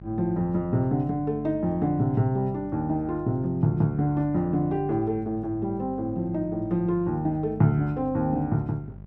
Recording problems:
electrical hum; 50 Hz, harmonics up to 600 Hz, SNR 17 dB

